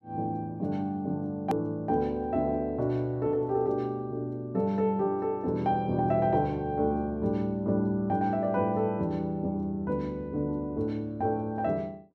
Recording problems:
hard cut with a click; at 1.5 s

